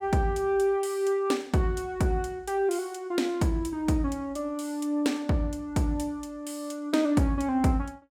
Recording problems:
none

